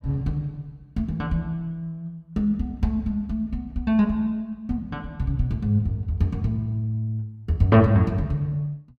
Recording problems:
none

